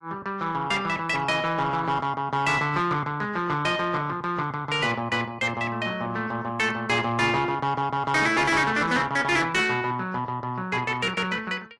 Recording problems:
codec artefacts; AAC, log-spectral distance 2 dB, nothing above 11 kHz
distortion; soft clipping, signal-to-distortion ratio 11 dB

